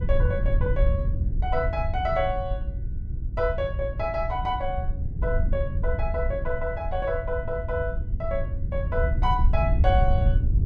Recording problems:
wind noise; below 82 Hz, SNR -1 dB

